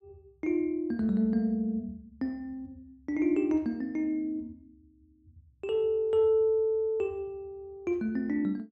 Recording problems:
none

